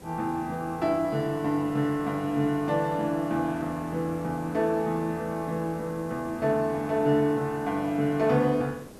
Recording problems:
hiss; SNR 19 dB

